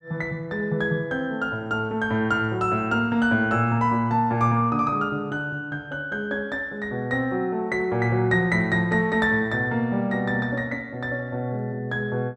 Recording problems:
none

